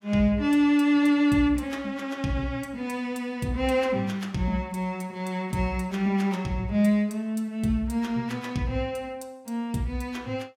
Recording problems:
none

